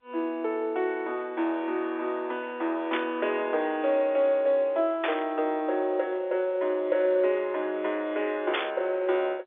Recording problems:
telephone audio; 280 Hz to 3.8 kHz, G.711
static burst; at 3 s, at 5 s and at 8.5 s; peak +2 dB vs average level

